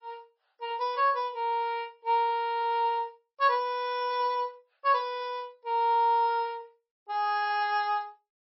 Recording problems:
codec artefacts; MP3, log-spectral distance 2 dB, nothing above 4.6 kHz

